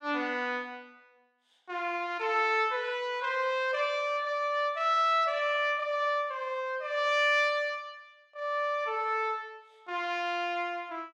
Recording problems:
none

